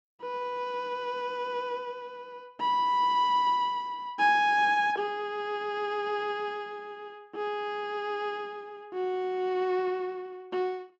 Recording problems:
none

